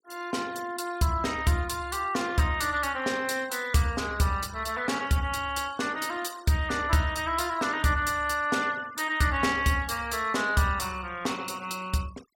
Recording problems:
denoising artefacts; signal-to-artefact ratio 20 dB

